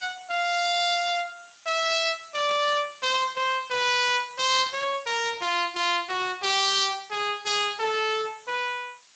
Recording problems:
codec artefacts; Speex, log-spectral distance 10 dB, nothing above 7.3 kHz
hiss; slope +3 dB per octave, SNR 27 dB
static burst; at 2.5 s and at 4.5 s; peak -10 dB vs average level

